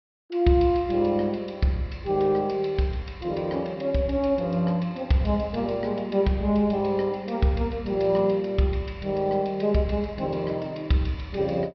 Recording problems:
treble missing; nothing above 5.5 kHz

